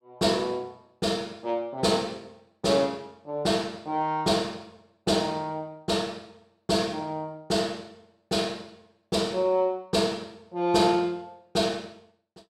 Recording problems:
none

